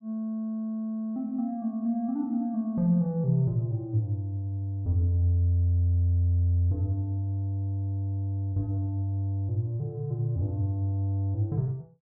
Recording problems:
none

